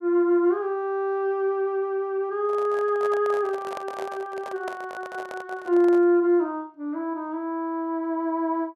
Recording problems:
microphone handling noise; from 2.5 to 6 s; peak -6 dB vs average level

